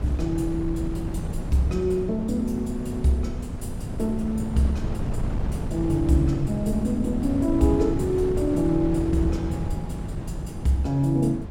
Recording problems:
wind noise; below 190 Hz, SNR 6 dB

